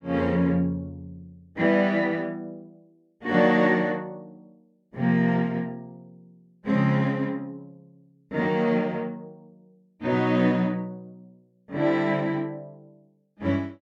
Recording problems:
none

